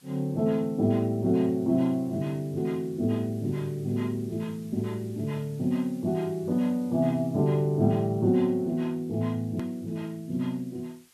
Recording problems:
background hiss; slope +1 dB per octave, SNR 29 dB
hard cut with a click; at 9.5 s

